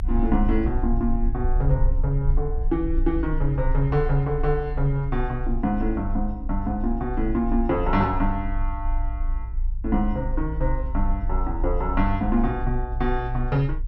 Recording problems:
low-frequency rumble; below 54 Hz, strongest tone 28 Hz, SNR 3 dB

